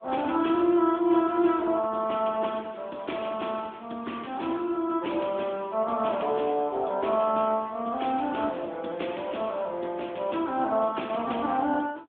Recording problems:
phone line; 240 Hz to 3.5 kHz, AMR-NB

